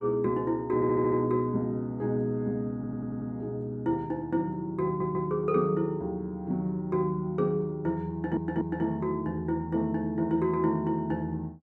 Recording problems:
stutter; 4 times, first at 0.5 s

